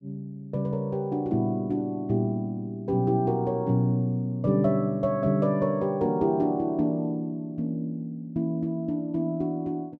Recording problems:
none

